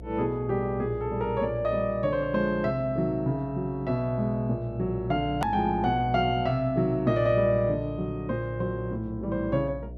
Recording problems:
hum; 60 Hz, harmonics up to 660 Hz, SNR 15 dB
hard cut with a click; at 5.5 s

